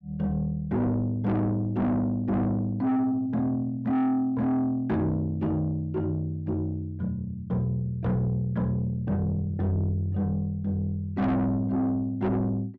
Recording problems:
distortion; soft clipping, signal-to-distortion ratio 7 dB

